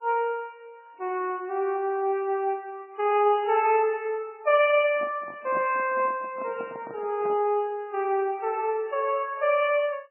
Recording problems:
codec artefacts; MP3, log-spectral distance 2 dB, nothing above 2.4 kHz
microphone handling noise; from 5 to 7.5 s; peak -9 dB vs average level

